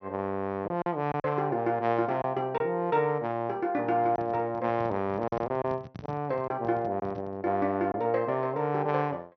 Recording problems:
treble cut off; nothing above 6 kHz
packet loss; 4% of the sound replaced, filled with silence
microphone handling noise; from 4 to 7.5 s; peak -8 dB vs average level

